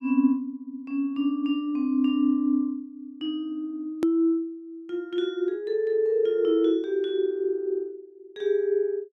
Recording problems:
click at an edit; at 4 s

